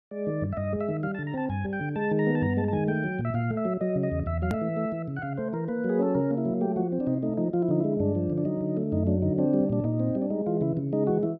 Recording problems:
edit click; at 4.5 s

